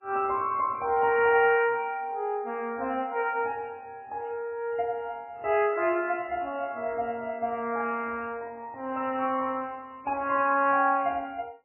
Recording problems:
codec artefacts; MP3, log-spectral distance 2 dB, nothing above 2.5 kHz

